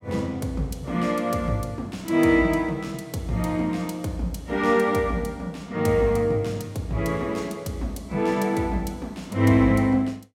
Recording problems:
none

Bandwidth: 16.5 kHz